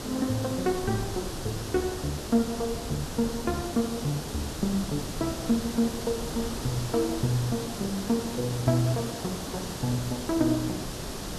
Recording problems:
hiss; SNR 6 dB
wind on the microphone; below 130 Hz, SNR 16 dB

